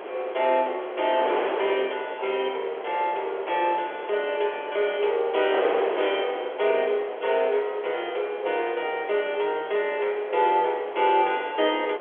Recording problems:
phone line; 340 Hz to 3.4 kHz, G.711
wind noise; below 910 Hz, SNR 8 dB

